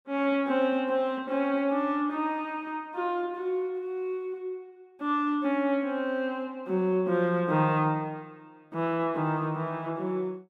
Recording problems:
none

